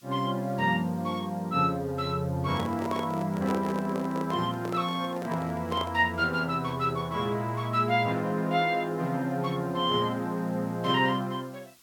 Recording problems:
hiss; SNR 27 dB
microphone handling noise; from 2.5 to 6 s; peak -1 dB vs average level

